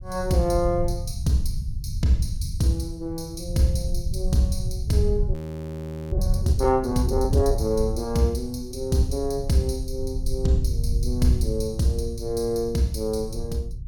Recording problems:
rumble; below 88 Hz, SNR 5 dB
frozen audio; at 5.5 s for 1 s

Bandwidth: 17 kHz